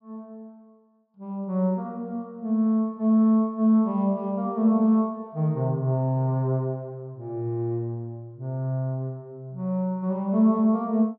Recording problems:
treble cut off; nothing above 5.5 kHz

